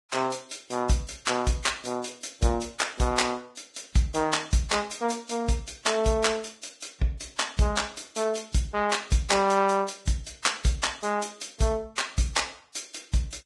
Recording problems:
codec artefacts; Vorbis, log-spectral distance 6 dB, nothing above 10.7 kHz

